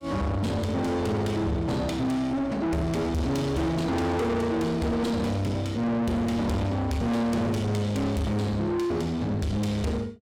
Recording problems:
distortion; soft clipping, signal-to-distortion ratio 7 dB

